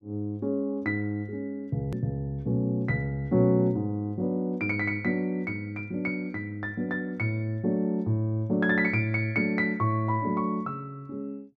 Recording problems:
hard cut with a click; at 2 s

